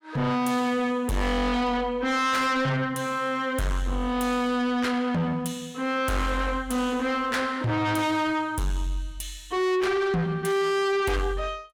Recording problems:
distorted audio; soft clipping, signal-to-distortion ratio 7 dB

